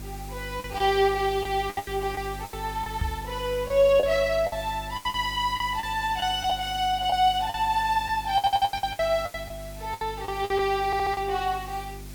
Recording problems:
hum; 50 Hz, harmonics up to 350 Hz, SNR 16 dB
hiss; slope -2 dB per octave, SNR 19 dB
lost packets; 11% of the sound replaced, filled with the last packet
microphone thump; at 3 s; peak 0 dB vs average level
stutter; at 8.5 s and at 11 s

